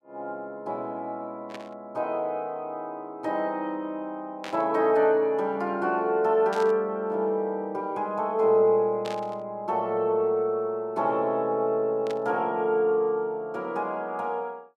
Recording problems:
burst of static; 5 times, first at 1.5 s; peak -8 dB vs average level

